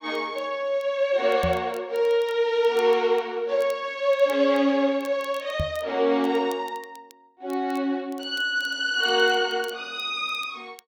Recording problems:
crackling; vinyl, SNR 27 dB
microphone thump; at 1.5 s and at 5.5 s; peak -1 dB vs average level

